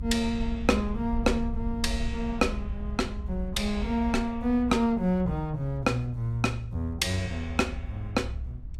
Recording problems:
rumble; below 68 Hz, SNR 8 dB

